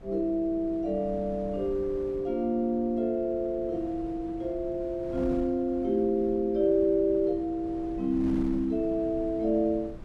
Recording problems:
wind noise; below 270 Hz, SNR 16 dB

